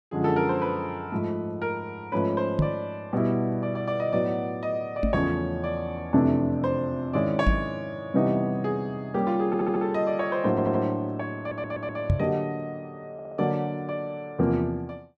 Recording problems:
microphone bump; 4 times, first at 2.5 s; peak +7 dB vs average level
audio stuttering; 4 times, first at 9.5 s

